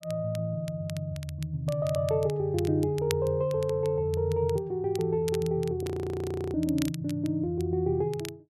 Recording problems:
crackle; vinyl, SNR 18 dB
frozen audio; at 6 s for 0.5 s

